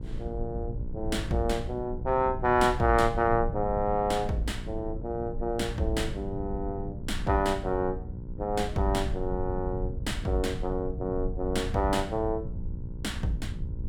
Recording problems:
hum; 60 Hz, harmonics up to 1 kHz, SNR 15 dB
rumble; below 96 Hz, SNR 8 dB

